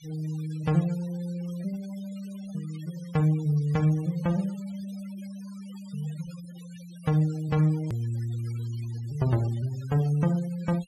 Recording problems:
noise reduction artefacts; signal-to-artefact ratio 21 dB
edit click; at 8 s

